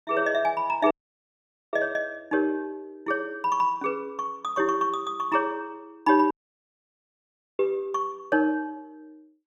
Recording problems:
audio cutting out; at 1 s for 1 s and at 6.5 s for 1.5 s

